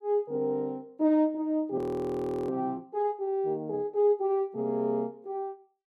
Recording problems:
frozen audio; at 2 s for 0.5 s

